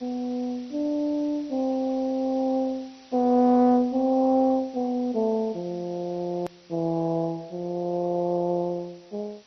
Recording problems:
lossy codec; MP2, log-spectral distance 5 dB
background hiss; slope 0 dB per octave, SNR 27 dB
edit click; at 6.5 s

